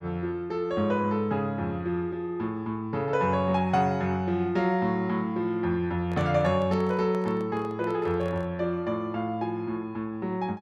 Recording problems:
microphone handling noise; from 6 to 8.5 s; peak -8 dB vs average level

